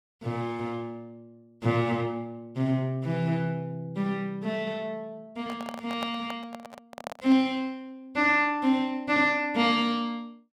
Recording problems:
microphone handling noise; from 5.5 to 7.5 s; peak -4 dB vs average level

